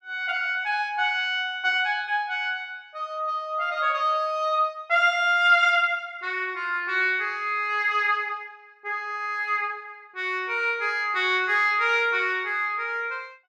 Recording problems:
none

